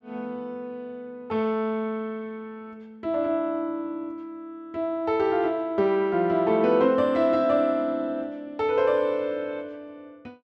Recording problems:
none

